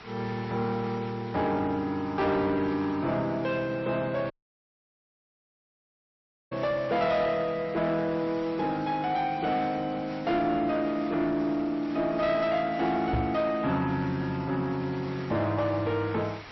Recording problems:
lossy codec; MP3, log-spectral distance 3 dB, nothing above 5.7 kHz
distorted audio; soft clipping, signal-to-distortion ratio 12 dB
background hiss; SNR 18 dB
dropout; at 4.5 s for 2 s
microphone bump; at 13 s; peak +2 dB vs average level

